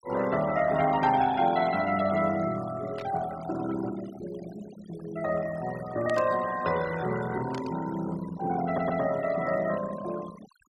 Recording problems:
denoising artefacts; signal-to-artefact ratio 15 dB
burst of static; at 3 s, at 6 s and at 7.5 s; peak -11 dB vs average level
audio stuttering; at 8.5 s

